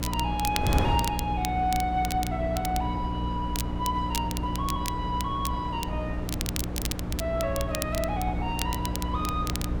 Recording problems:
hum; 60 Hz, harmonics up to 300 Hz, SNR 3 dB
wind noise; below 410 Hz, SNR 4 dB
crackle; vinyl, SNR 6 dB

